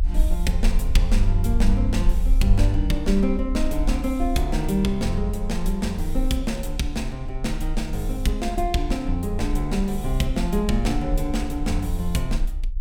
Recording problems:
rumble; below 46 Hz, strongest tone 30 Hz, SNR 2 dB

